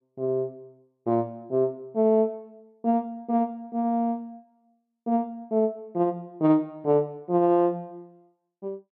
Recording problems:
none

